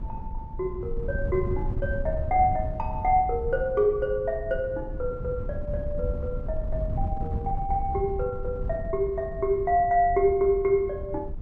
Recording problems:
wind noise; below 110 Hz, SNR 7 dB

